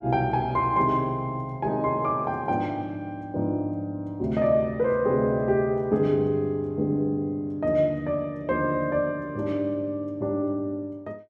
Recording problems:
none

